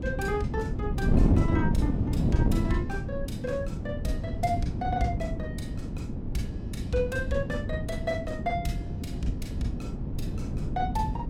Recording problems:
wind on the microphone; below 220 Hz, SNR -2 dB

